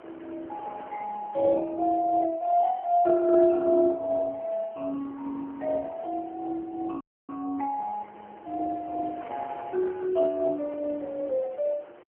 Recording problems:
phone line; 300 Hz to 2.7 kHz, AMR-NB
wind noise; below 1.1 kHz, SNR 22 dB
dropout; at 7 s

